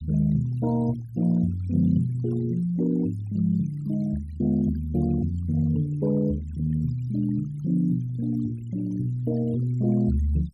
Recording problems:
denoising artefacts; signal-to-artefact ratio 23 dB

